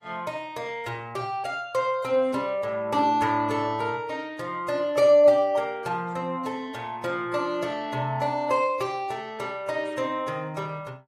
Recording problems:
lossy compression; AAC, log-spectral distance 2 dB, nothing above 15.1 kHz

